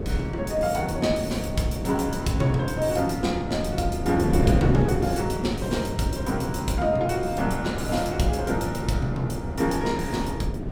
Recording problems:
wind noise; below 340 Hz, SNR 3 dB

